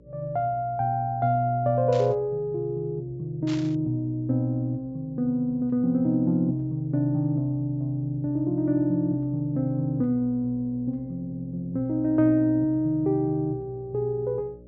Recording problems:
treble missing; nothing above 8 kHz
mains hum; 60 Hz, harmonics up to 600 Hz, SNR 25 dB
burst of static; at 2 s and at 3.5 s; peak -10 dB vs average level

